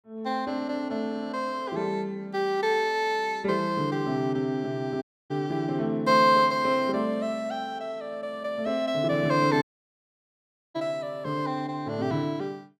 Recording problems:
audio cutting out; at 5 s and at 9.5 s for 1 s

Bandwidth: 16.5 kHz